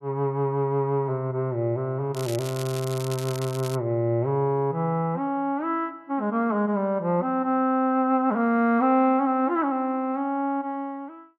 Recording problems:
crackle; from 2 to 4 s; loose cable, SNR 14 dB

